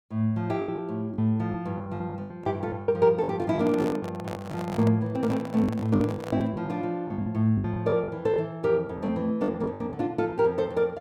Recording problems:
packet loss; 13% of the sound replaced, filled with the last packet
handling noise; from 3.5 to 6.5 s; peak -5 dB vs average level

